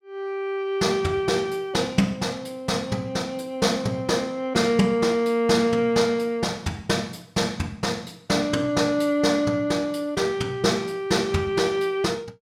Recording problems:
none

